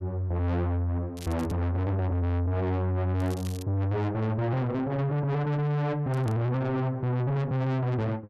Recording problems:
distortion; soft clipping, signal-to-distortion ratio 6 dB
crackle; at 1 s, at 3 s and at 6 s; loose cable, SNR 20 dB

